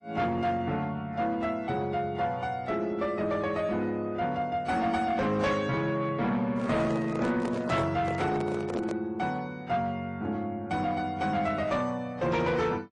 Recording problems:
codec artefacts; MP3, then AAC, log-spectral distance 2 dB, nothing above 8.2 kHz
distorted audio; soft clipping, signal-to-distortion ratio 12 dB
microphone handling noise; from 6.5 to 9 s; peak -1 dB vs average level

